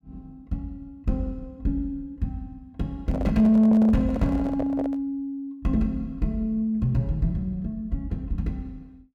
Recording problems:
distorted audio; soft clipping, signal-to-distortion ratio 10 dB
handling noise; from 3 to 5 s; peak -1 dB vs average level

